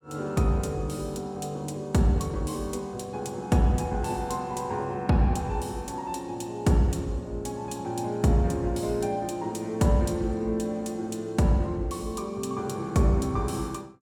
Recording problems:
none

